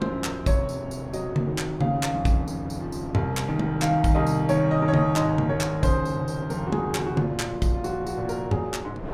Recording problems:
wind noise; below 600 Hz, SNR 14 dB

